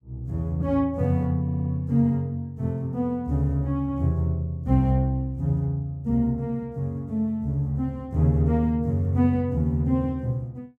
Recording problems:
stutter; at 1.5 s

